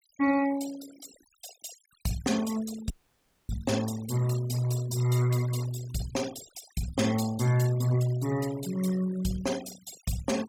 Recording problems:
denoising artefacts; signal-to-artefact ratio 14 dB
audio cutting out; at 3 s for 0.5 s

